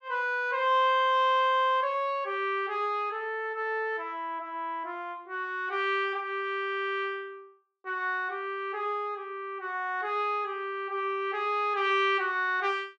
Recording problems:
none

